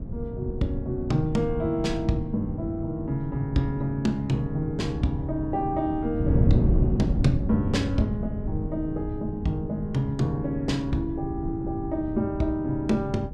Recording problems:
wind noise; below 170 Hz, SNR 3 dB

